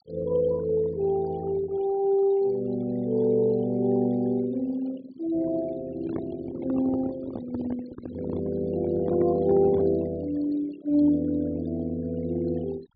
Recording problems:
low-pass filter; nothing above 4.8 kHz
noise reduction artefacts; signal-to-artefact ratio 20 dB
microphone handling noise; from 6 to 10 s; peak -5 dB vs average level

